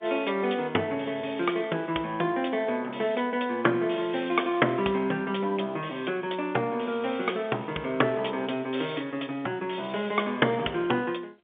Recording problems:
phone line; 240 Hz to 3.5 kHz, G.711

